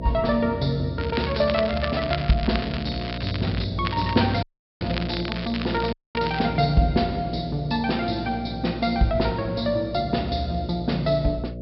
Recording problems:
low-pass filter; nothing above 5.2 kHz
hum; 60 Hz, harmonics up to 660 Hz, SNR 9 dB
crackling; from 1 to 3.5 s and from 4 to 6.5 s; loose cable, SNR 10 dB
audio cutting out; at 4.5 s and at 6 s

